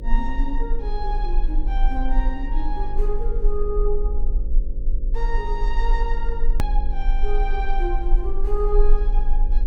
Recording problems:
mains hum; 50 Hz, harmonics up to 550 Hz, SNR 8 dB
low-frequency rumble; below 34 Hz, strongest tone 20 Hz, SNR -5 dB
edit click; at 6.5 s

